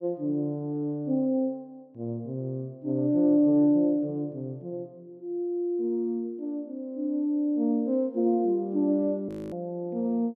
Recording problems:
frozen audio; at 9.5 s

